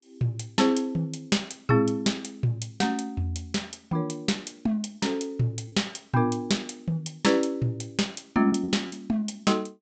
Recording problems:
treble cut off; nothing above 8 kHz
packet loss; 1.8% of the sound replaced, filled with repeated pitch periods

